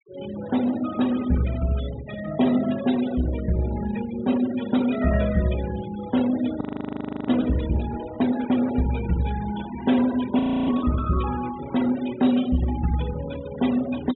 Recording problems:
low-pass filter; nothing above 3.9 kHz
noise reduction artefacts; signal-to-artefact ratio 14 dB
audio freezing; at 6.5 s for 0.5 s and at 10 s

